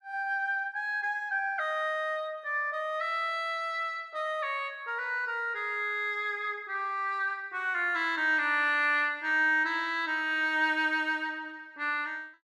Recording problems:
none

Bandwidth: 14 kHz